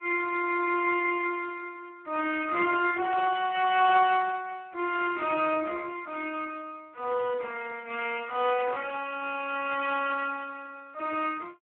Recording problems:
telephone audio; 320 Hz to 3.1 kHz, Speex
static burst; 4 times, first at 3 s; peak -8 dB vs average level

